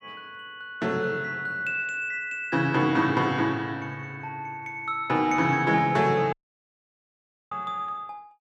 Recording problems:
audio cutting out; at 6.5 s for 1 s

